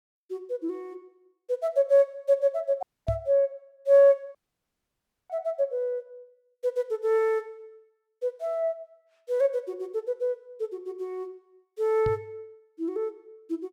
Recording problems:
audio cutting out; at 3 s and at 4.5 s for 1 s
knock on the microphone; at 3 s and at 12 s; peak 0 dB vs average level

